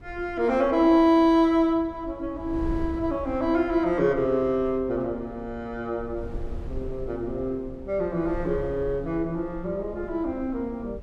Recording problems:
wind on the microphone; below 100 Hz, SNR 16 dB

